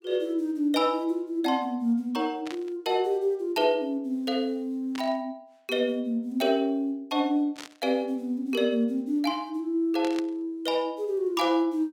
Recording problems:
static burst; 4 times, first at 2.5 s; peak -7 dB vs average level

